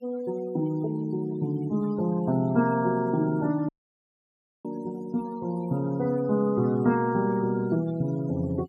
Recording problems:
denoising artefacts; signal-to-artefact ratio 22 dB
audio cutting out; at 3.5 s for 1 s

